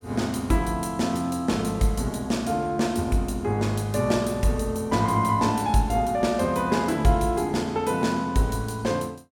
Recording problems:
none

